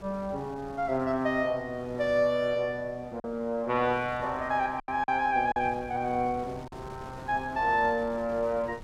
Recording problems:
wind noise; below 700 Hz, SNR 19 dB
packet loss; 3% of the sound replaced, filled with silence

